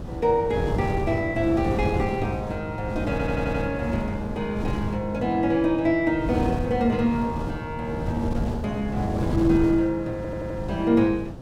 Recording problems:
hum; 60 Hz, harmonics up to 300 Hz, SNR 21 dB
wind on the microphone; below 290 Hz, SNR 6 dB
audio stuttering; at 3 s and at 10 s

